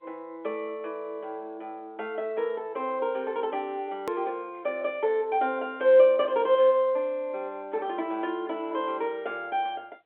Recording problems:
telephone audio; 320 Hz to 3.5 kHz, G.711
click at an edit; at 4 s

